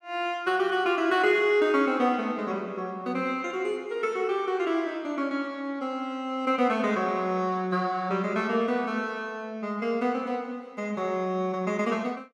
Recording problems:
none

